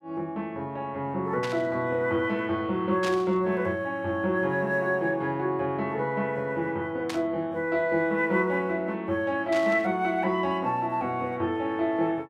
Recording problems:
burst of static; 4 times, first at 1.5 s; peak -4 dB vs average level

